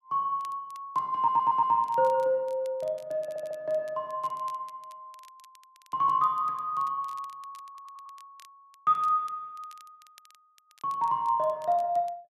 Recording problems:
crackle; vinyl, SNR 30 dB
audio stuttering; at 1 s, at 3 s and at 7.5 s

